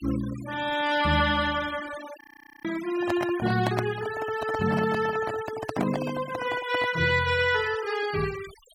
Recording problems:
noise reduction artefacts; signal-to-artefact ratio 15 dB
audio freezing; at 2 s
microphone handling noise; from 3 to 7 s; peak +1 dB vs average level

